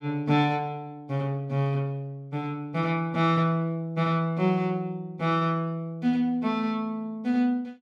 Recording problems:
none

